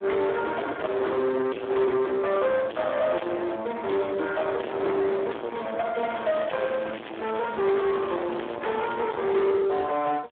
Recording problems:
phone line; 280 Hz to 3.4 kHz, Speex
distortion; soft clipping, signal-to-distortion ratio 6 dB
crackling; from 6 to 9 s; loose cable, SNR 14 dB

